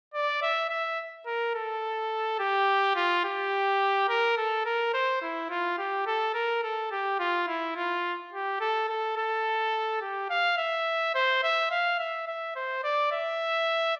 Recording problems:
none

